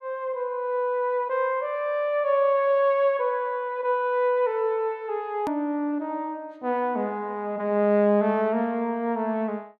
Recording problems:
edit click; at 5.5 s

